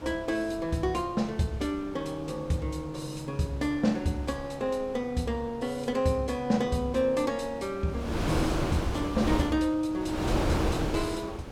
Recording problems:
wind noise; below 730 Hz, SNR 4 dB

